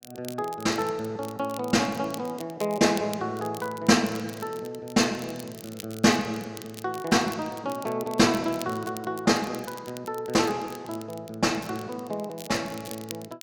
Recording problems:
crackling; vinyl, SNR 18 dB

